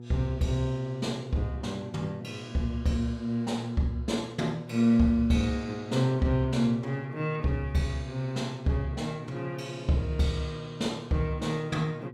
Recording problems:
hum; 60 Hz, harmonics up to 840 Hz, SNR 15 dB

